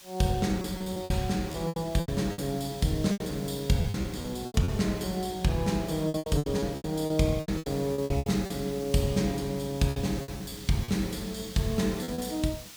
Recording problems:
background hiss; slope +2 dB per octave, SNR 17 dB
packet loss; 14% of the sound replaced, filled with repeated pitch periods

